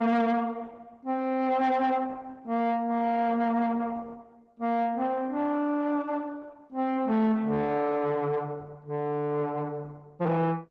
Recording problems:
lossy codec; Opus, log-spectral distance 3 dB
distortion; soft clipping, signal-to-distortion ratio 10 dB

